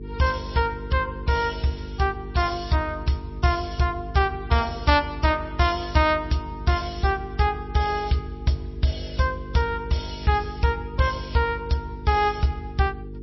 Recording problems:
lossy codec; MP3, log-spectral distance 4 dB, nothing above 5.7 kHz
hum; 50 Hz, harmonics up to 450 Hz, SNR 13 dB

